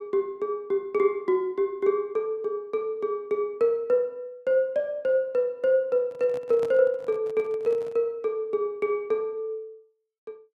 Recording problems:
microphone handling noise; from 6 to 8 s; peak -9 dB vs average level

